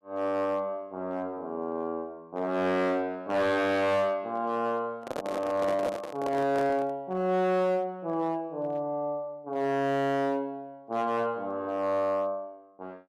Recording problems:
distorted audio; hard clipping, uneven, signal-to-distortion ratio 11 dB
handling noise; from 5 to 7 s; peak -1 dB vs average level

